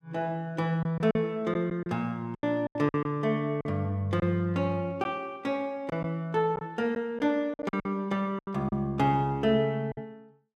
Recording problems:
packet loss; 8% of the sound replaced, filled with silence

